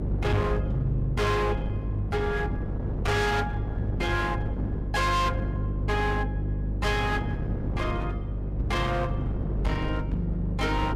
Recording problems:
distortion; hard clipping, uneven, signal-to-distortion ratio 5 dB
hum; 50 Hz, harmonics up to 550 Hz, SNR 2 dB
wind noise; below 320 Hz, SNR 7 dB

